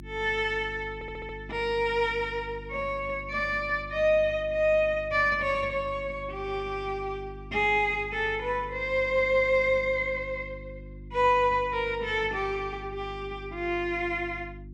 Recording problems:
hum; 50 Hz, harmonics up to 350 Hz, SNR 17 dB
stutter; at 1 s

